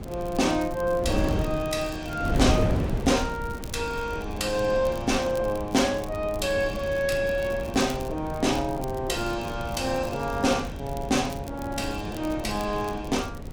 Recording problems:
wind noise; below 310 Hz, SNR 6 dB
crackling; vinyl, SNR 21 dB

